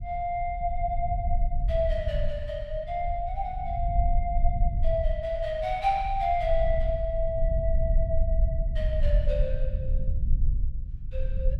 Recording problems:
rumble; below 58 Hz, SNR 0 dB

